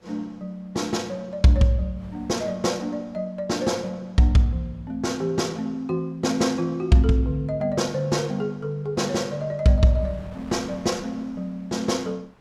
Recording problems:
wind noise; below 1.1 kHz, SNR 28 dB

